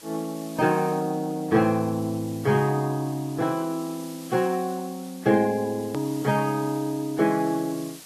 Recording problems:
lossy compression; Vorbis, log-spectral distance 2 dB, nothing above 13.3 kHz
hiss; slope +1 dB per octave, SNR 19 dB
hard cut with a click; at 6 s

